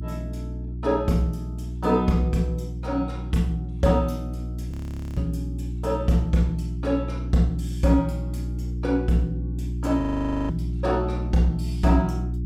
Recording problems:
hum; 60 Hz, harmonics up to 360 Hz, SNR 6 dB
audio freezing; at 4.5 s and at 10 s

